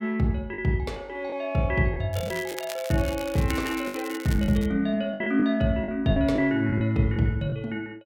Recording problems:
packet loss; 7% of the sound replaced, filled with the last packet
crackle; from 2 to 4.5 s; loose cable, SNR 14 dB

